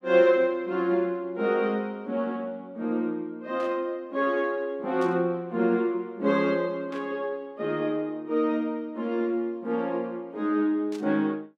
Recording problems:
static burst; 4 times, first at 3.5 s; peak -14 dB vs average level

